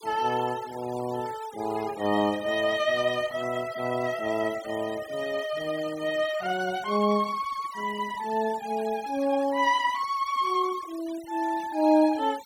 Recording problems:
noise reduction artefacts; signal-to-artefact ratio 18 dB

